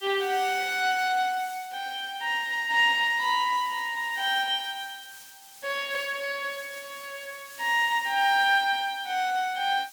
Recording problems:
background hiss; slope +3 dB per octave, SNR 20 dB

